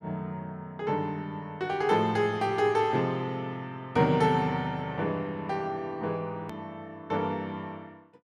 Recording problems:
edit click; at 6.5 s

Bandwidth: 14.5 kHz